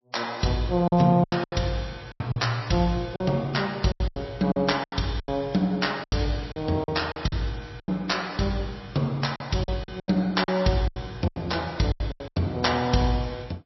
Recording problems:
lossy compression; MP3, log-spectral distance 4 dB, nothing above 5.7 kHz
packet loss; 12% of the sound replaced, filled with silence

